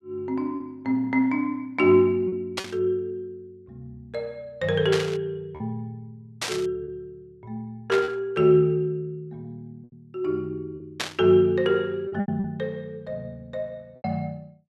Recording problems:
packet loss; 4% of the sound replaced, filled with repeated pitch periods
burst of static; 5 times, first at 2.5 s; peak +2 dB vs average level

